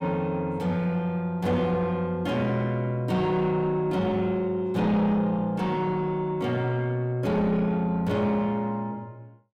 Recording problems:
distortion; soft clipping, signal-to-distortion ratio 10 dB

